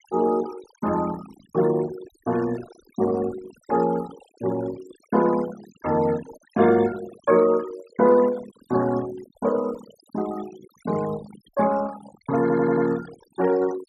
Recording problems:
noise reduction artefacts; signal-to-artefact ratio 16 dB
audio stuttering; at 12 s

